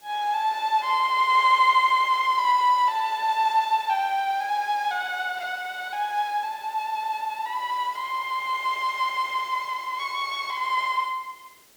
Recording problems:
hiss; SNR 27 dB

